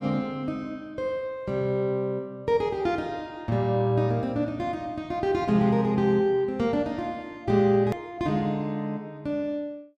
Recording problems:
hard cut with a click; at 8 s

